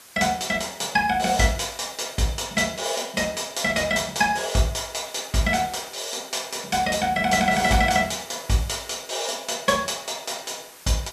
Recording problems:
background hiss; slope 0 dB per octave, SNR 20 dB

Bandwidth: 14 kHz